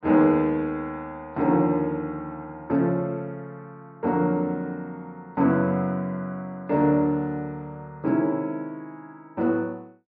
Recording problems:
low-pass filter; nothing above 5.5 kHz

